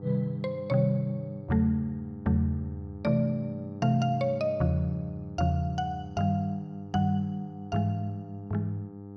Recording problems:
hum; 50 Hz, harmonics up to 900 Hz, SNR 14 dB

